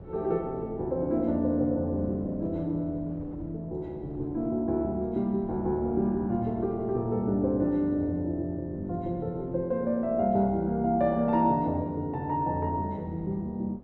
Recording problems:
wind noise; below 320 Hz, SNR 20 dB

